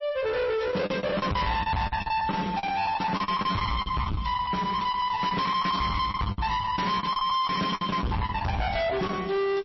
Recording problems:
lossy codec; MP3, log-spectral distance 4 dB, nothing above 5.7 kHz
distorted audio; hard clipping, uneven, signal-to-distortion ratio 5 dB
lost packets; 17% of the sound replaced, filled with the last packet

